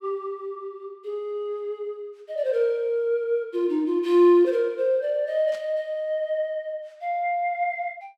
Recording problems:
static burst; at 5.5 s; peak -16 dB vs average level

